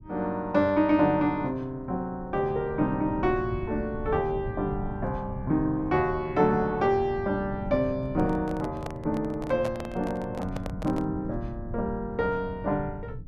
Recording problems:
rumble; below 140 Hz, SNR 12 dB
microphone handling noise; from 8 to 11 s; peak -3 dB vs average level

